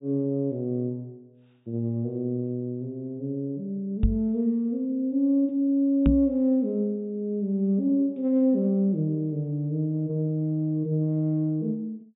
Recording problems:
treble cut off; nothing above 4 kHz
knock on the microphone; at 4 s and at 6 s; peak +6 dB vs average level

